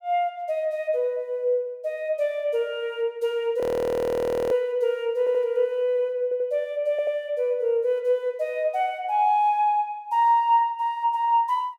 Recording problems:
audio freezing; at 3.5 s for 1 s
audio stuttering; at 5 s, at 6 s and at 7 s

